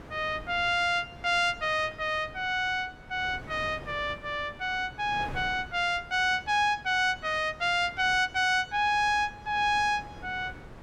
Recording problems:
wind on the microphone; below 720 Hz, SNR 19 dB

